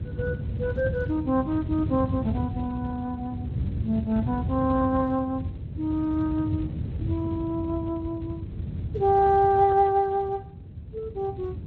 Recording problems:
lossy compression; Speex, log-spectral distance 2 dB
low-frequency rumble; below 160 Hz, SNR 6 dB

